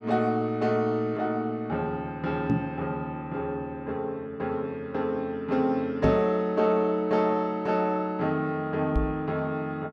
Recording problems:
microphone thump; at 2.5 s, at 6 s and at 9 s; peak +6 dB vs average level

